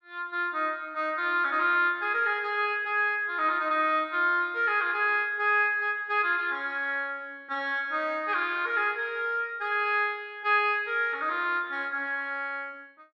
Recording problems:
none

